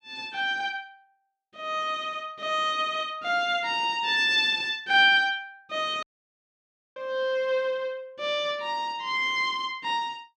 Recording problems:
dropout; at 6 s for 1 s

